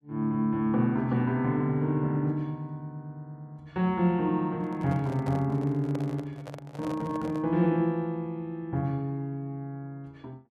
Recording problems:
handling noise; from 4.5 to 7.5 s; peak -7 dB vs average level

